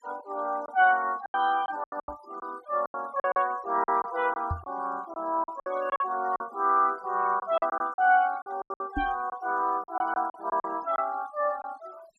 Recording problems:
noise reduction artefacts; signal-to-artefact ratio 23 dB
lost packets; 11% of the sound replaced, filled with silence
knock on the microphone; at 2 s, at 4.5 s and at 9 s; peak 0 dB vs average level

